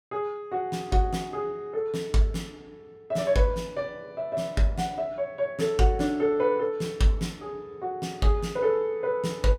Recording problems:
none

